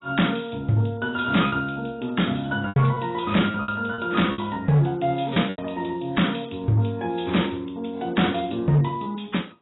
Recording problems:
codec artefacts; AAC, log-spectral distance 8 dB, nothing above 3.8 kHz
distorted audio; hard clipping, signal-to-distortion ratio 10 dB
packet loss; 5% of the sound replaced, filled with repeated pitch periods

